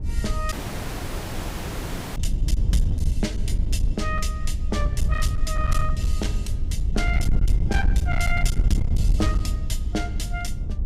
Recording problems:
distorted audio; hard clipping, signal-to-distortion ratio 12 dB
hum; 50 Hz, harmonics up to 500 Hz, SNR 17 dB
wind on the microphone; below 78 Hz, SNR -5 dB
audio cutting out; at 0.5 s for 1.5 s

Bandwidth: 15.5 kHz